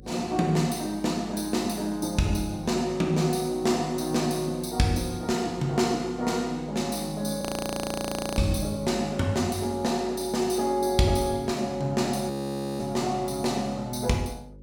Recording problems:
electrical hum; 50 Hz, harmonics up to 550 Hz, SNR 21 dB
audio freezing; at 7.5 s for 1 s and at 12 s

